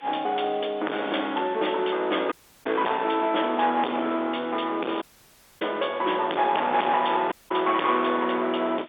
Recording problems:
phone line; 280 Hz to 3.6 kHz, G.711
distorted audio; hard clipping, uneven, signal-to-distortion ratio 5 dB
background hiss; SNR 26 dB
audio cutting out; at 2.5 s, at 5 s for 0.5 s and at 7.5 s

